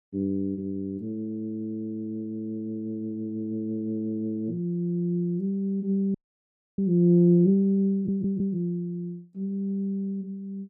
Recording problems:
audio freezing; at 6 s for 0.5 s
stutter; at 8 s

